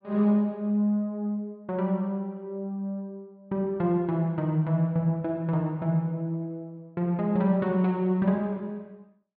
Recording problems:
treble cut off; nothing above 5 kHz

